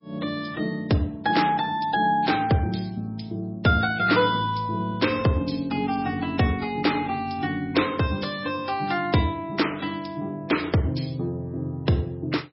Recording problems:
lossy compression; MP3, log-spectral distance 4 dB, nothing above 5.5 kHz

